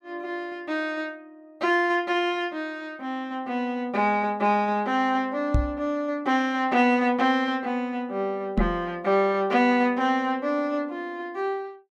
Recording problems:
knock on the microphone; at 5.5 s and at 8.5 s; peak +5 dB vs average level

